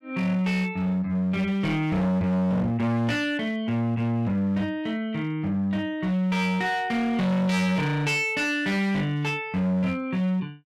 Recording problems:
distortion; hard clipping, signal-to-distortion ratio 6 dB

